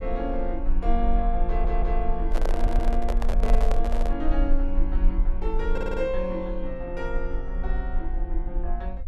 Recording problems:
rumble; below 38 Hz, strongest tone 20 Hz, SNR -2 dB
audio stuttering; at 1.5 s, at 2.5 s and at 5.5 s
handling noise; from 2.5 to 4 s; peak +4 dB vs average level

